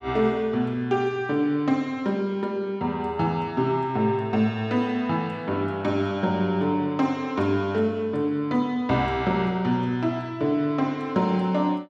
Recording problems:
none

